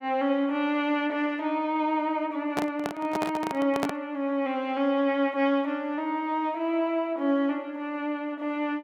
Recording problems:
handling noise; from 2.5 to 4 s; peak +2 dB vs average level

